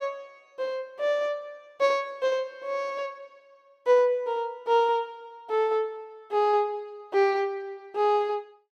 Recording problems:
none

